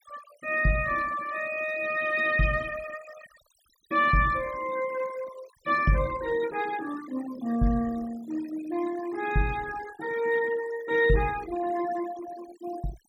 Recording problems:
denoising artefacts; signal-to-artefact ratio 17 dB

